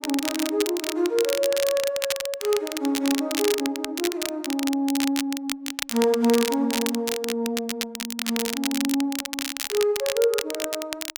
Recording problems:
crackling; vinyl, SNR 5 dB

